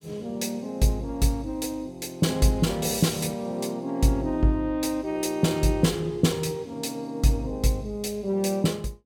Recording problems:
none

